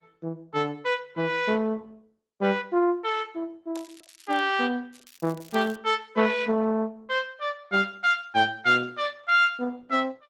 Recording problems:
lossy codec; Opus, log-spectral distance 4 dB
crackle; at 3.5 s and at 5 s; loose cable, SNR 25 dB

